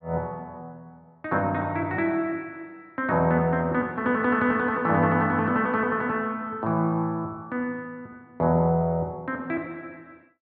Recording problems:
low-pass filter; nothing above 5.5 kHz

